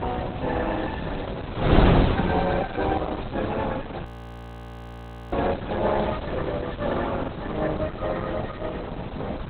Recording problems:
codec artefacts; Opus, log-spectral distance 8 dB
wind noise; below 590 Hz, SNR 1 dB
crackling; from 0.5 to 3.5 s and from 5.5 to 7 s; loose cable, SNR 21 dB
audio freezing; at 4 s for 1.5 s

